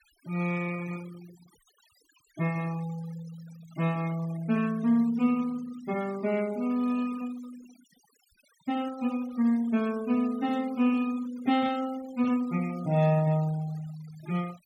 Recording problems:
denoising artefacts; signal-to-artefact ratio 20 dB

